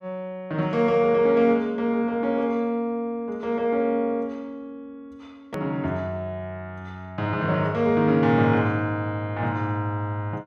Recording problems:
edit click; at 5.5 s

